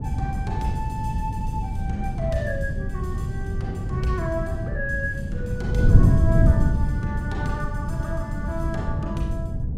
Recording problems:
mains hum; 60 Hz, harmonics up to 720 Hz, SNR 18 dB
wind on the microphone; below 140 Hz, SNR -6 dB

